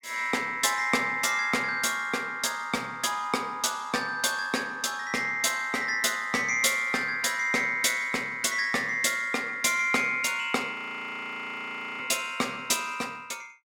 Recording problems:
audio freezing; at 11 s for 1.5 s

